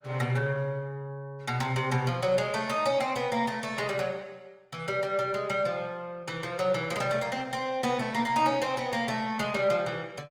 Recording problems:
lossy codec; Opus, log-spectral distance 3 dB, nothing above 19 kHz

